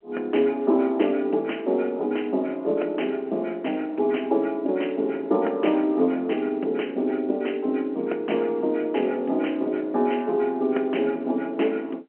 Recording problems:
phone line; 240 Hz to 3.1 kHz, G.711

